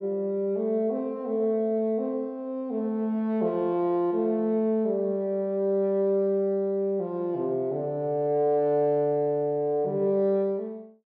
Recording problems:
none

